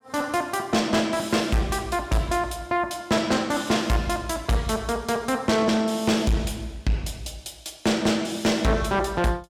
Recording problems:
distortion; soft clipping, signal-to-distortion ratio 8 dB

